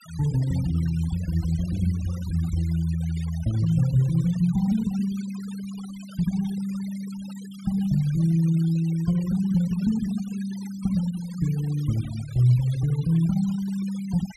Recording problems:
noise reduction artefacts; signal-to-artefact ratio 20 dB

